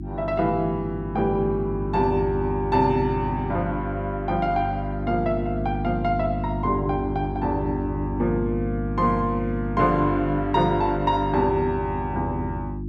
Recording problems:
hum; 50 Hz, harmonics up to 350 Hz, SNR 5 dB

